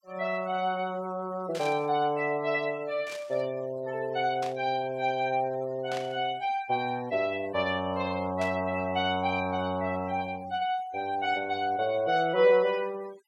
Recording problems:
noise reduction artefacts; signal-to-artefact ratio 22 dB
burst of static; 5 times, first at 1.5 s; peak -8 dB vs average level

